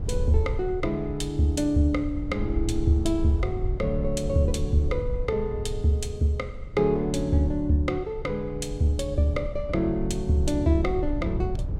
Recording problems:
rumble; below 82 Hz, SNR 8 dB

